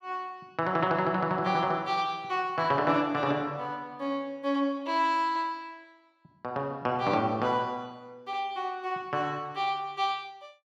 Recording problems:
none

